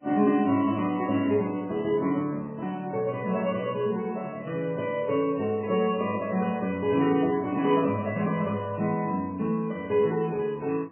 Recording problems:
lossy codec; MP3, then MP3, log-spectral distance 2 dB, nothing above 3 kHz

